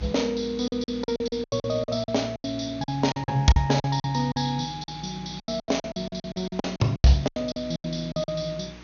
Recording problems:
low-pass filter; nothing above 6.6 kHz
electrical hum; 60 Hz, harmonics up to 360 Hz, SNR 21 dB
background hiss; slope -2 dB per octave, SNR 21 dB
packet loss; 19% of the sound replaced, filled with silence

